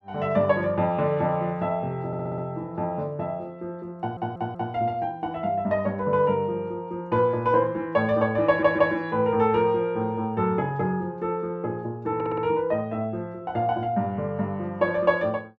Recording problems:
audio stuttering; 4 times, first at 2 s

